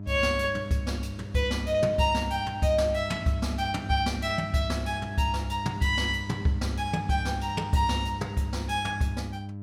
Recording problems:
electrical hum; 50 Hz, harmonics up to 700 Hz, SNR 10 dB

